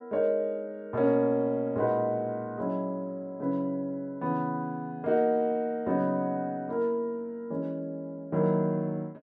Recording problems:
none

